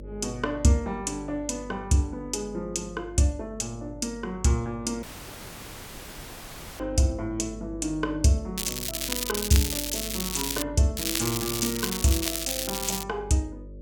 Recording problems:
hum; 50 Hz, harmonics up to 600 Hz, SNR 15 dB
dropout; at 5 s for 2 s
crackle; from 8.5 to 11 s and from 11 to 13 s; loose cable, SNR 1 dB

